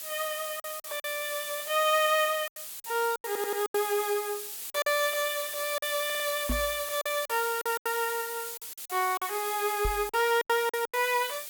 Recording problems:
hiss; slope +2 dB per octave, SNR 7 dB
packet loss; 9% of the sound replaced, filled with silence
stutter; at 3.5 s and at 6 s
microphone bump; at 6.5 s and at 10 s; peak +1 dB vs average level

